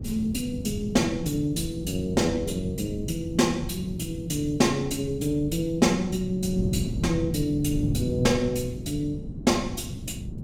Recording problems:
wind on the microphone; below 210 Hz, SNR 7 dB

